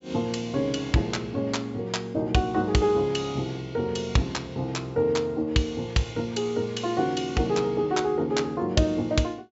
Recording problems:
low-pass filter; nothing above 8 kHz

